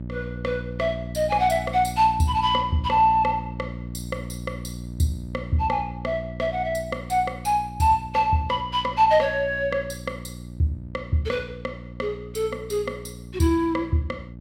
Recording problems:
hum; 60 Hz, harmonics up to 600 Hz, SNR 12 dB

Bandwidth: 16 kHz